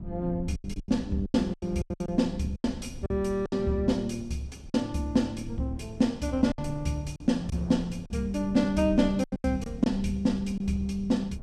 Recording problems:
low-frequency rumble; below 150 Hz, SNR 14 dB
wind on the microphone; below 510 Hz, SNR 24 dB
lost packets; 9% of the sound replaced, filled with silence

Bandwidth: 14 kHz